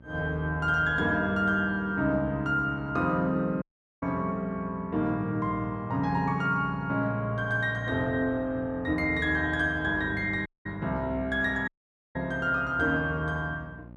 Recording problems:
hum; 60 Hz, harmonics up to 960 Hz, SNR 20 dB
audio cutting out; at 3.5 s, at 10 s and at 12 s

